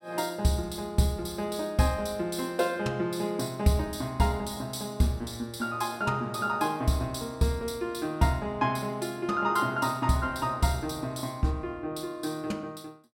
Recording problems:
none

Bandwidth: 16 kHz